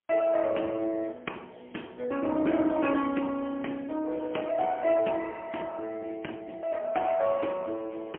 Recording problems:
telephone audio; 240 Hz to 3.3 kHz, AMR-NB, then MP3

